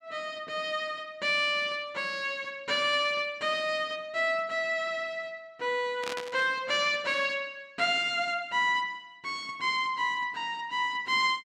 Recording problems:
burst of static; at 6 s; peak -3 dB vs average level

